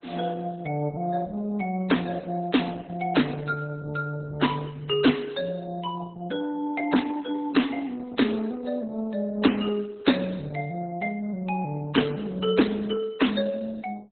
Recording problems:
lossy codec; MP3, then Opus, log-spectral distance 4 dB, nothing above 4 kHz

